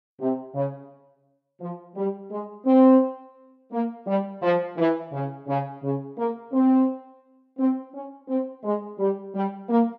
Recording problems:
none

